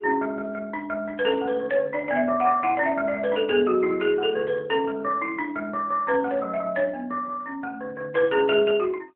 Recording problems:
telephone audio; 260 Hz to 3.2 kHz, AMR-NB

